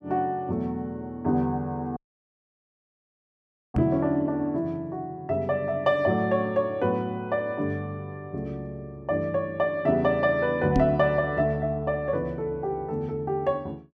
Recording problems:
audio cutting out; at 2 s for 2 s
microphone thump; at 4 s and at 11 s; peak +5 dB vs average level

